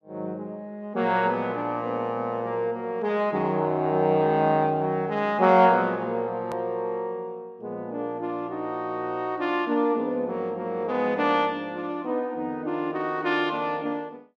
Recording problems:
click at an edit; at 6.5 s

